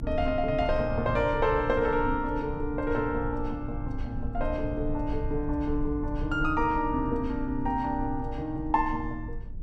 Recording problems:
low-frequency rumble; below 78 Hz, strongest tone 20 Hz, SNR 9 dB

